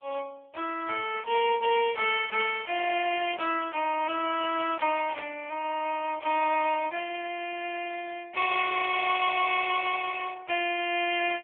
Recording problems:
telephone audio; 320 Hz to 3.3 kHz, AMR-NB
burst of static; at 5 s; peak -7 dB vs average level

